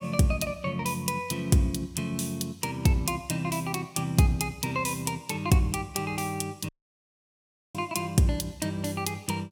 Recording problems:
audio cutting out; at 6.5 s for 1 s

